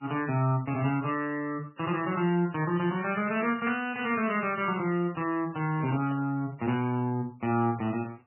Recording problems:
codec artefacts; MP3, log-spectral distance 3 dB, nothing above 2.4 kHz
static burst; at 2 s, at 4 s and at 6 s; peak -10 dB vs average level

